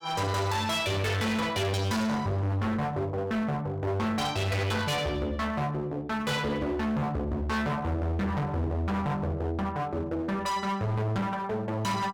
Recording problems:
distorted audio; hard clipping, uneven, signal-to-distortion ratio 5 dB

